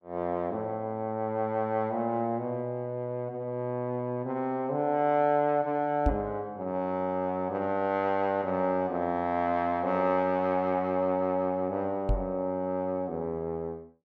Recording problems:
knock on the microphone; at 6 s and at 12 s; peak +5 dB vs average level

